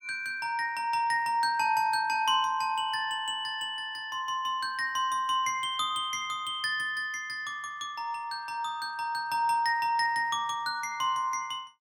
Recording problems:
none

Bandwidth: 18 kHz